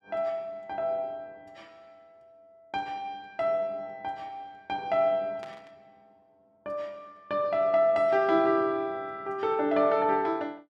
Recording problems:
static burst; at 5.5 s; peak -14 dB vs average level

